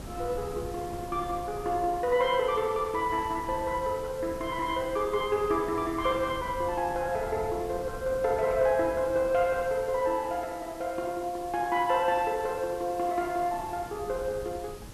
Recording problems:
background hiss; SNR 21 dB
wind noise; below 290 Hz, SNR 17 dB

